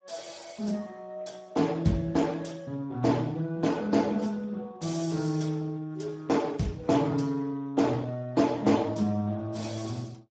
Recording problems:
lossy codec; AAC, then Speex, log-spectral distance 4 dB, nothing above 7.6 kHz

